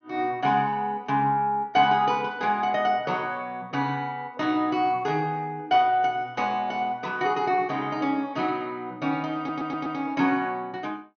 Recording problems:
treble cut off; nothing above 6.3 kHz
audio stuttering; at 9.5 s

